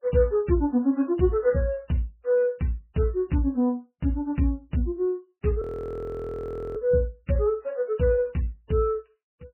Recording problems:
lossy codec; MP3, log-spectral distance 3 dB
frozen audio; at 5.5 s for 1 s

